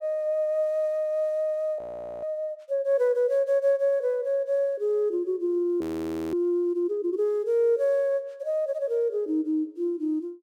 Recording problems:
audio freezing; at 2 s and at 6 s for 0.5 s

